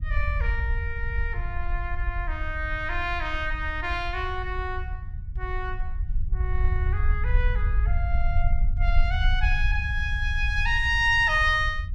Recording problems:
low-frequency rumble; below 62 Hz, SNR 2 dB

